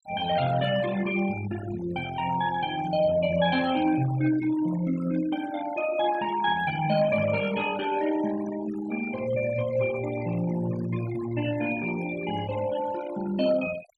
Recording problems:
noise reduction artefacts; signal-to-artefact ratio 14 dB

